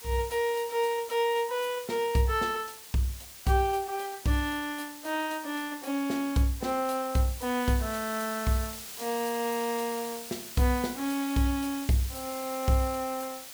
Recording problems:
background hiss; slope +1 dB per octave, SNR 11 dB

